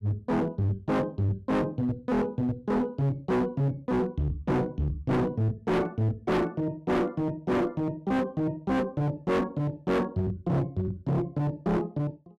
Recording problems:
distorted audio; hard clipping, signal-to-distortion ratio 6 dB

